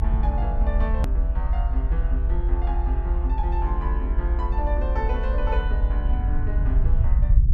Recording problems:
low-frequency rumble; below 62 Hz, SNR -9 dB
hard cut with a click; at 1 s

